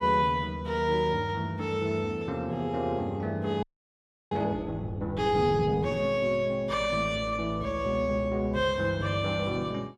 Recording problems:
audio freezing; at 3.5 s for 0.5 s

